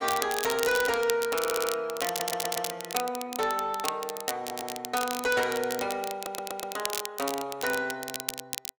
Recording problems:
distortion; soft clipping, signal-to-distortion ratio 12 dB
crackling; vinyl, SNR 5 dB
stutter; 4 times, first at 1.5 s

